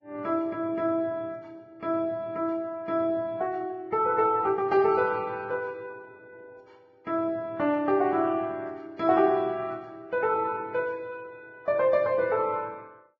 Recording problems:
lossy compression; Vorbis, log-spectral distance 2 dB

